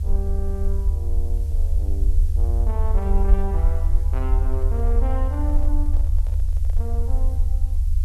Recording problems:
hiss; slope +2 dB per octave, SNR 19 dB
rumble; below 74 Hz, SNR -11 dB
microphone handling noise; from 4.5 to 7 s; peak -8 dB vs average level

